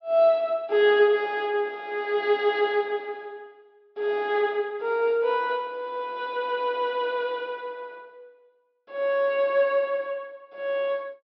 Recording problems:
low-pass filter; nothing above 5.5 kHz

